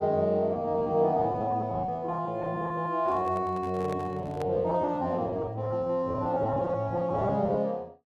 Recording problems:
lost packets; 16% of the sound replaced, filled with repeated pitch periods
handling noise; from 3 to 4.5 s; peak -7 dB vs average level

